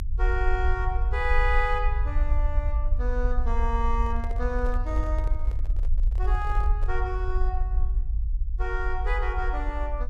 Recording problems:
low-frequency rumble; below 52 Hz, SNR -3 dB
handling noise; from 4 to 7 s; peak -9 dB vs average level

